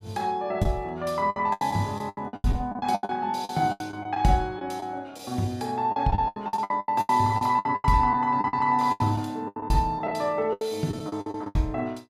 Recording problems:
packet loss; 18% of the sound replaced, filled with the last packet

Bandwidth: 15.5 kHz